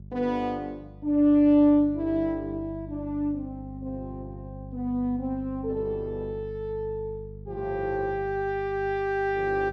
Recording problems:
hum; 50 Hz, harmonics up to 400 Hz, SNR 15 dB

